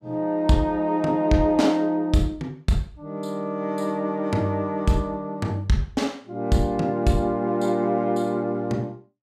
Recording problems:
none

